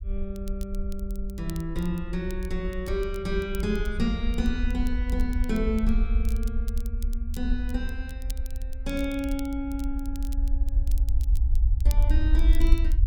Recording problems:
rumble; below 56 Hz, SNR -2 dB
crackling; vinyl, SNR 18 dB

